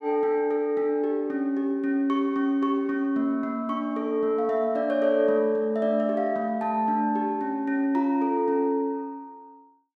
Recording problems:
none

